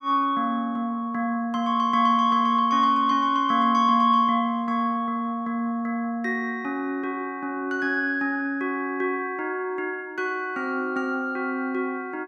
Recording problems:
none

